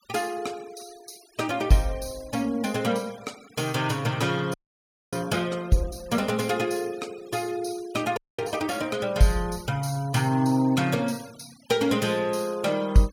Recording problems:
noise reduction artefacts; signal-to-artefact ratio 22 dB
frozen audio; at 4.5 s for 0.5 s and at 8 s

